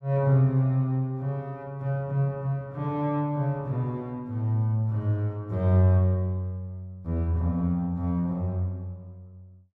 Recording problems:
none

